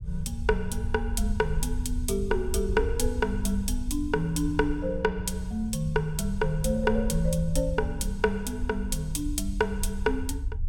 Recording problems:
rumble; below 70 Hz, SNR 5 dB

